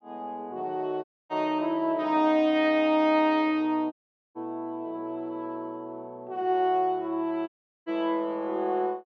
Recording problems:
audio cutting out; at 1 s, at 4 s and at 7.5 s

